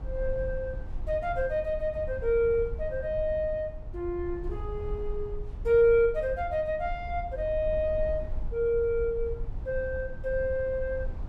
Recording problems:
rumble; below 68 Hz, SNR 10 dB

